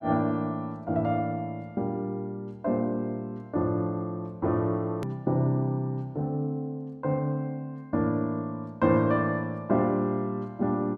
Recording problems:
click at an edit; at 5 s

